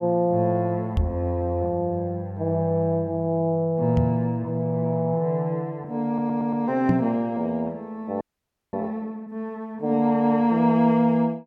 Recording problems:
microphone bump; at 1 s, at 4 s and at 7 s; peak +5 dB vs average level
audio stuttering; at 6 s
audio freezing; at 8 s for 0.5 s

